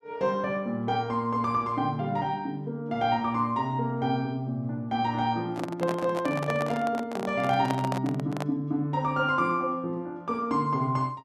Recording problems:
handling noise; from 5.5 to 8.5 s; peak 0 dB vs average level

